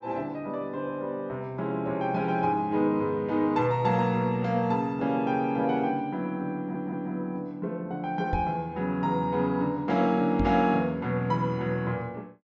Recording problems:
treble cut off; nothing above 8 kHz
stutter; at 6.5 s
knock on the microphone; at 8.5 s and at 10 s; peak 0 dB vs average level

